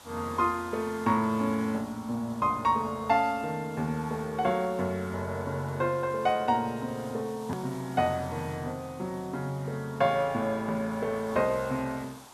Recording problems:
background hiss; SNR 20 dB
hard cut with a click; at 7.5 s

